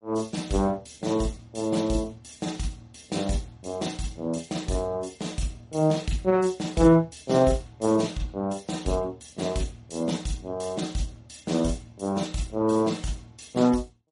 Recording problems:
codec artefacts; MP3, then MP3, log-spectral distance 5 dB, nothing above 10.4 kHz

